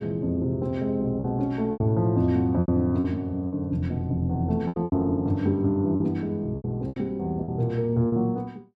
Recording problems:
packet loss; 8% of the sound replaced, filled with repeated pitch periods

